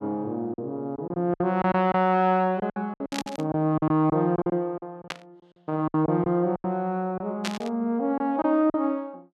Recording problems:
lost packets; 12% of the sound replaced, filled with silence
burst of static; at 3 s, at 5 s and at 7.5 s; peak -1 dB vs average level

